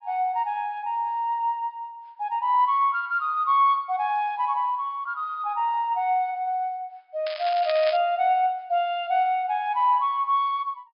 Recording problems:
treble missing; nothing above 5.5 kHz
crackling; at 7.5 s; loose cable, SNR 13 dB

